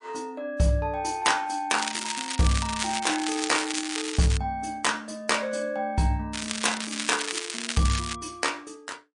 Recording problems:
lossy codec; MP3, log-spectral distance 9 dB
crackle; from 2 to 4.5 s and from 6.5 to 8 s; loose cable, SNR 4 dB

